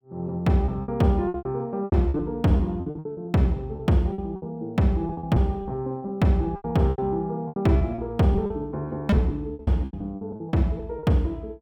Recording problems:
packet loss; 16% of the sound replaced, filled with repeated pitch periods

